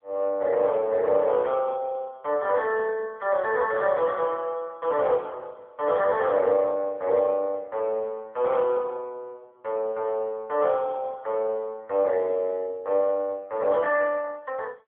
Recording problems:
phone line; 300 Hz to 3.3 kHz, AMR-NB

